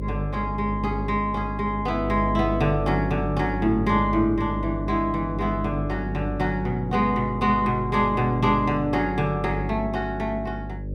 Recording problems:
mains hum; 50 Hz, harmonics up to 600 Hz, SNR 7 dB

